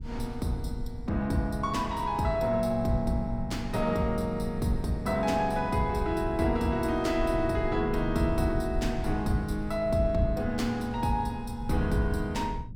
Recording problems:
rumble; below 110 Hz, SNR 10 dB

